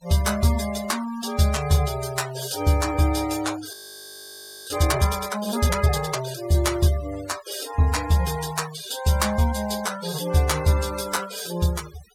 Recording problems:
noise reduction artefacts; signal-to-artefact ratio 15 dB
frozen audio; at 3.5 s for 1 s

